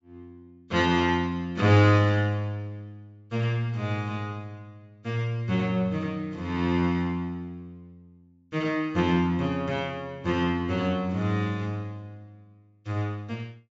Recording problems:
treble missing; nothing above 8 kHz

